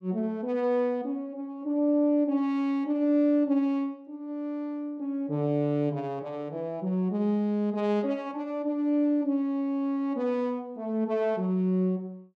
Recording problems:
none

